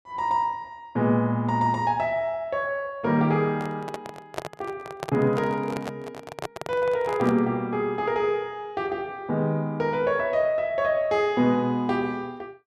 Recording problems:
microphone handling noise; from 3.5 to 7.5 s; peak -2 dB vs average level

